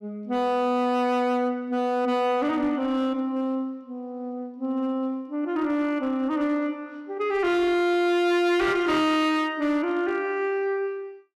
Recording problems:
distorted audio; hard clipping, signal-to-distortion ratio 11 dB

